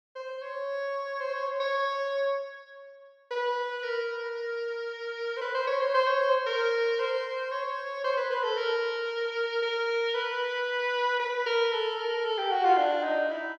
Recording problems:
none

